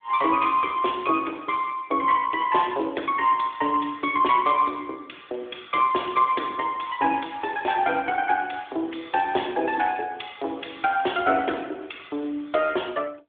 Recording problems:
telephone audio; 260 Hz to 3.5 kHz, AMR-NB

